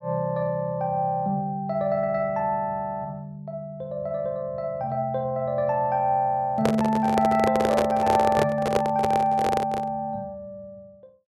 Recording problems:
microphone handling noise; from 6.5 to 10 s; peak +5 dB vs average level

